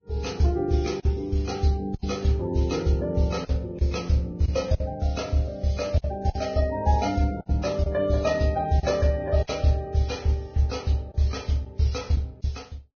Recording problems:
lossy compression; Vorbis, log-spectral distance 3 dB, nothing above 6.3 kHz
packet loss; 5% of the sound replaced, filled with silence

